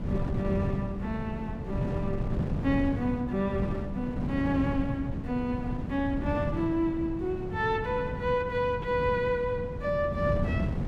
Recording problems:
wind noise; below 220 Hz, SNR 3 dB

